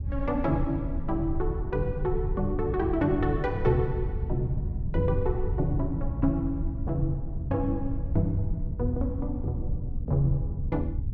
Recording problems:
rumble; below 100 Hz, SNR 3 dB

